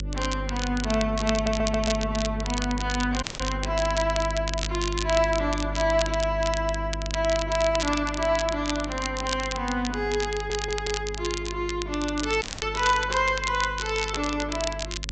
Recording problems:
treble missing; nothing above 8 kHz
electrical hum; 50 Hz, harmonics up to 550 Hz, SNR 8 dB
crackling; vinyl, SNR 7 dB
stutter; at 1.5 s and at 10 s
dropout; at 3 s and at 12 s

